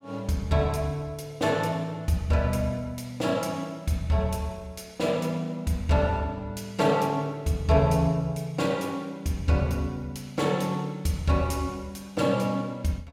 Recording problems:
none

